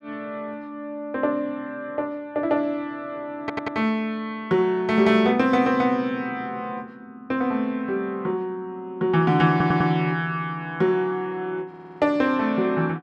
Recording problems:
stutter; at 3.5 s, at 9.5 s and at 12 s

